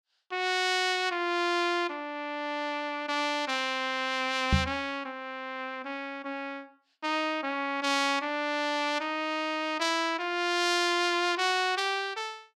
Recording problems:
microphone bump; at 4.5 s; peak +8 dB vs average level

